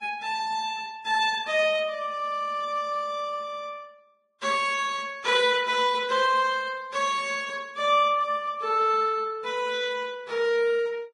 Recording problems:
lossy compression; Vorbis, log-spectral distance 2 dB

